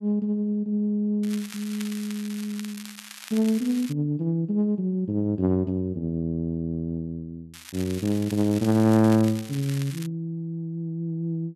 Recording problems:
crackling; from 1 to 4 s and from 7.5 to 10 s; loose cable, SNR 15 dB

